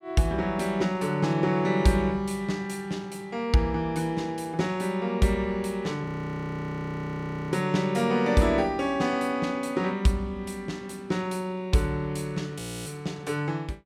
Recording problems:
audio freezing; at 6 s for 1.5 s and at 13 s

